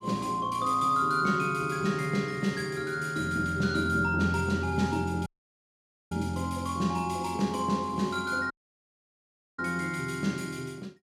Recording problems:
dropout; at 5.5 s for 1 s and at 8.5 s for 1 s

